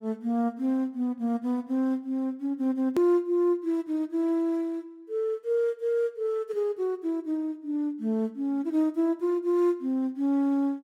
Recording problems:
edit click; at 3 s

